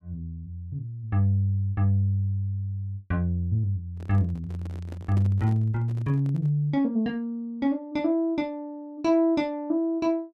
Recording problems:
handling noise; from 4 to 6.5 s; peak -8 dB vs average level

